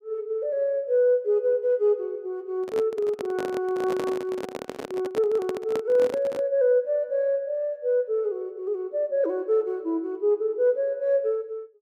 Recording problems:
microphone handling noise; from 2.5 to 6.5 s; peak -3 dB vs average level

